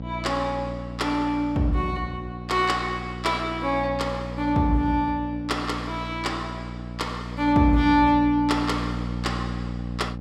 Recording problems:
hum; 60 Hz, harmonics up to 840 Hz, SNR 9 dB

